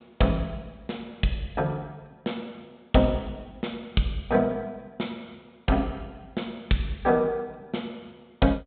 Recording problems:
treble missing; nothing above 4 kHz

